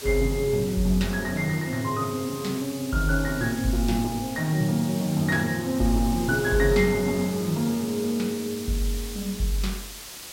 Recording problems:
background hiss; slope 0 dB per octave, SNR 12 dB

